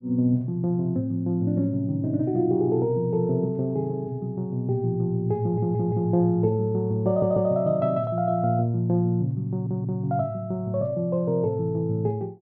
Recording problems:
stutter; at 5.5 s, at 7 s and at 9.5 s

